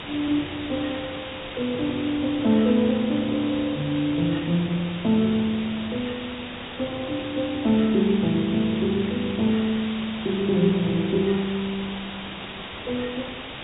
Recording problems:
treble cut off; nothing above 4 kHz
background hiss; SNR 10 dB

